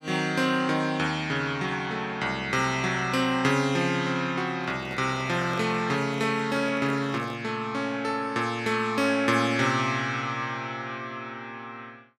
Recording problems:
microphone handling noise; from 4.5 to 7.5 s; peak -9 dB vs average level

